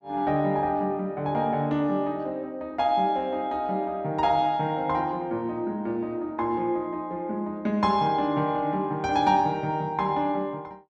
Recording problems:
none

